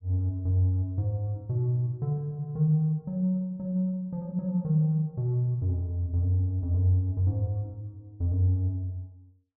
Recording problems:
none

